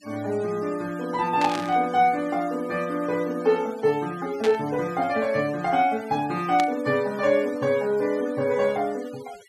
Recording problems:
denoising artefacts; signal-to-artefact ratio 21 dB
burst of static; at 1.5 s, at 4.5 s and at 6.5 s; peak -3 dB vs average level

